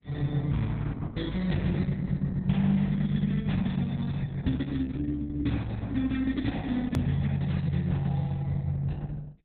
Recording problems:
lossy codec; Opus, log-spectral distance 3 dB, nothing above 13.1 kHz
edit click; at 7 s

